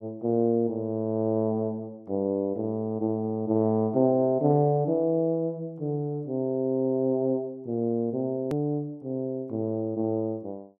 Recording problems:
hard cut with a click; at 8.5 s

